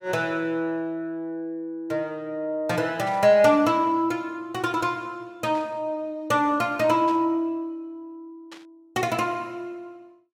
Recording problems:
burst of static; 4 times, first at 3 s; peak -14 dB vs average level

